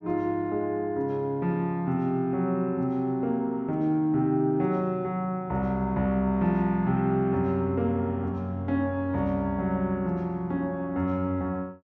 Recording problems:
none

